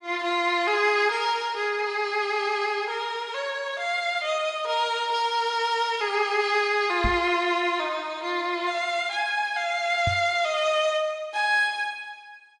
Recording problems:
lossy codec; MP3, log-spectral distance 2 dB, nothing above 10.7 kHz
knock on the microphone; at 7 s and at 10 s; peak 0 dB vs average level

